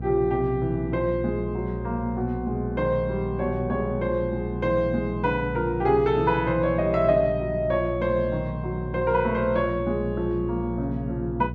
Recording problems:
hum; 60 Hz, harmonics up to 540 Hz, SNR 8 dB

